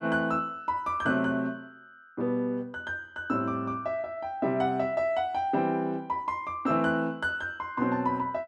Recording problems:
none

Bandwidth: 12.5 kHz